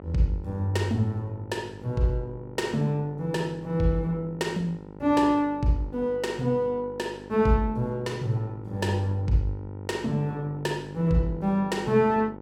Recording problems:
electrical hum; 50 Hz, harmonics up to 1.5 kHz, SNR 16 dB

